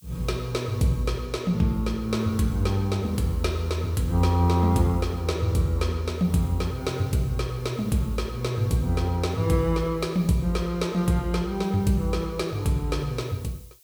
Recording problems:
background hiss; SNR 26 dB

